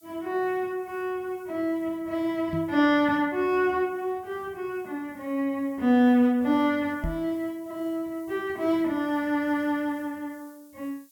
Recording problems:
hiss; SNR 30 dB
microphone thump; at 2.5 s and at 7 s; peak -1 dB vs average level

